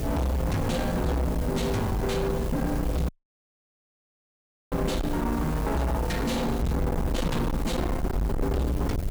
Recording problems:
distorted audio; soft clipping, signal-to-distortion ratio 6 dB
hum; 60 Hz, harmonics up to 660 Hz, SNR 8 dB
hiss; slope -4 dB per octave, SNR 14 dB
low-frequency rumble; below 220 Hz, SNR 4 dB
audio cutting out; at 3 s for 1.5 s

